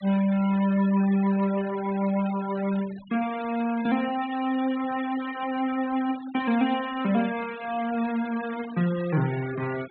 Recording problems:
low-pass filter; nothing above 4 kHz
denoising artefacts; signal-to-artefact ratio 17 dB

